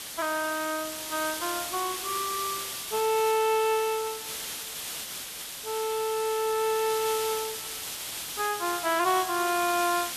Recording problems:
hiss; slope +1 dB per octave, SNR 5 dB

